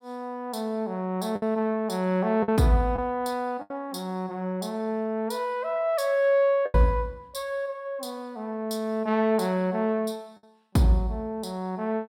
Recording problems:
lost packets; 3% of the sound replaced, filled with the last packet

